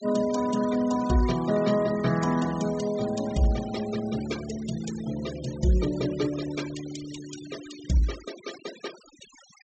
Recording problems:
treble missing; nothing above 8 kHz
denoising artefacts; signal-to-artefact ratio 15 dB

